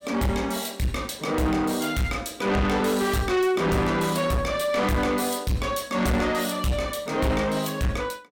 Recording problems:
distorted audio; soft clipping, signal-to-distortion ratio 7 dB

